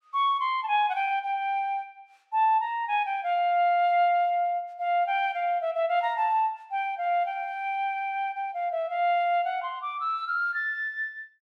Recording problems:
none

